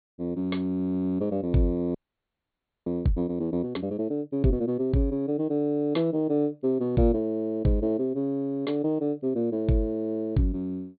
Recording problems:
low-pass filter; nothing above 4.5 kHz
frozen audio; at 2 s for 1 s

